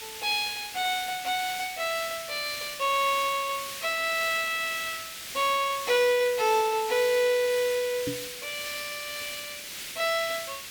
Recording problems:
background hiss; SNR 9 dB
knock on the microphone; at 8 s; peak -3 dB vs average level

